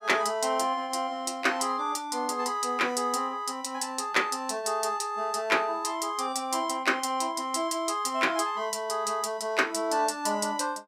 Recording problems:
none

